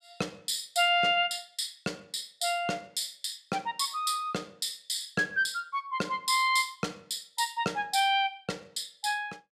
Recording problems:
none

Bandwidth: 14.5 kHz